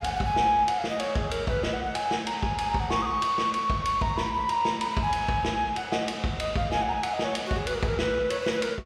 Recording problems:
none

